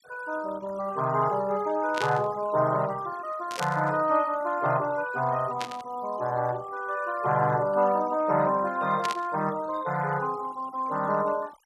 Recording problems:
noise reduction artefacts; signal-to-artefact ratio 22 dB
static burst; 4 times, first at 2 s; peak -2 dB vs average level

